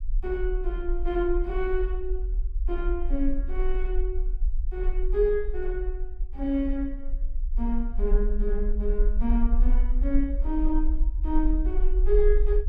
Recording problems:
rumble; below 42 Hz, strongest tone 20 Hz, SNR -1 dB

